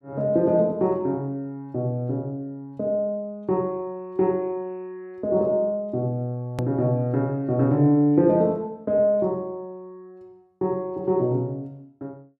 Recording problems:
hard cut with a click; at 6.5 s

